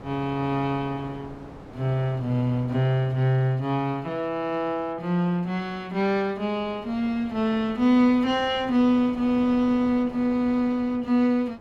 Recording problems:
wind noise; below 770 Hz, SNR 20 dB

